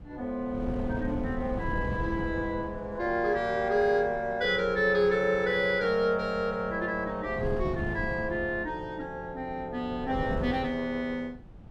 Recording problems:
wind on the microphone; below 220 Hz, SNR 11 dB

